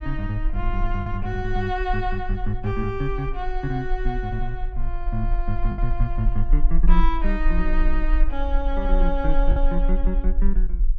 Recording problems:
rumble; below 38 Hz, strongest tone 18 Hz, SNR -1 dB
lost packets; 1.3% of the sound replaced, filled with the last packet

